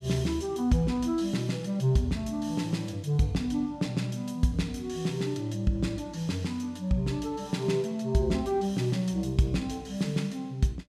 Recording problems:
none

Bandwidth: 14.5 kHz